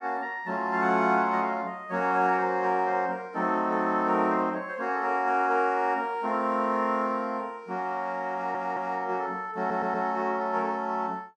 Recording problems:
stutter; at 8.5 s and at 9.5 s

